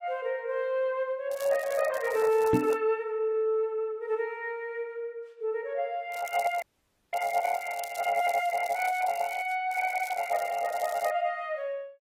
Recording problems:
codec artefacts; AAC, log-spectral distance 3 dB
crackling; from 1.5 to 3 s, from 6 to 9.5 s and from 9.5 to 11 s; loose cable, SNR 18 dB
microphone thump; at 2.5 s; peak +7 dB vs average level
dropout; at 6.5 s for 0.5 s

